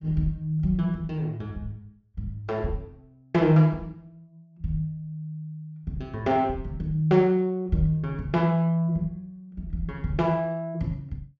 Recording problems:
treble cut off; nothing above 8 kHz

